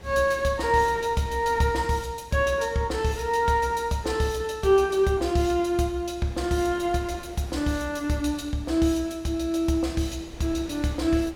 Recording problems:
wind on the microphone; below 860 Hz, SNR 22 dB

